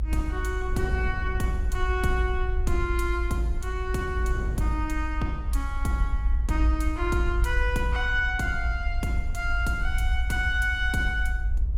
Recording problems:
low-frequency rumble; below 56 Hz, strongest tone 54 Hz, SNR 1 dB
wind on the microphone; below 150 Hz, SNR 13 dB

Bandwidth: 16 kHz